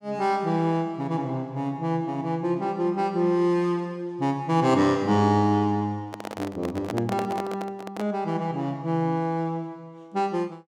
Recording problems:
handling noise; from 6 to 8 s; peak -2 dB vs average level

